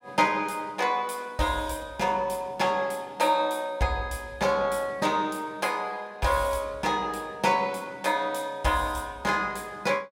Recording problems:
none

